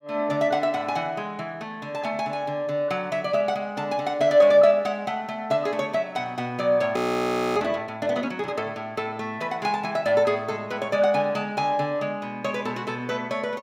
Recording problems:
audio freezing; at 7 s for 0.5 s

